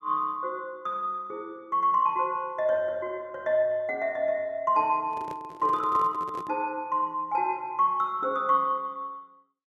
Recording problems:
handling noise; from 5 to 6.5 s; peak -10 dB vs average level

